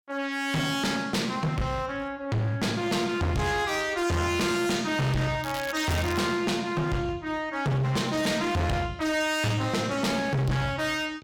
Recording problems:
distortion; hard clipping, signal-to-distortion ratio 6 dB
crackle; at 5.5 s; loose cable, SNR 12 dB

